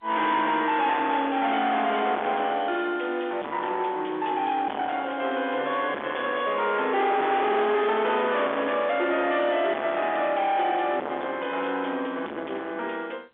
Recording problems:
telephone audio; 240 Hz to 3.6 kHz, G.711
distorted audio; soft clipping, signal-to-distortion ratio 6 dB

